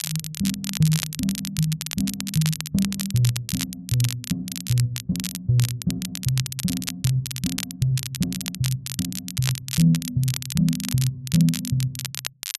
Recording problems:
crackle; vinyl, SNR 6 dB

